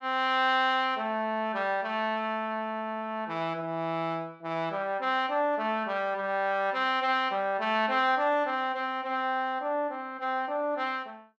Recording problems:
none

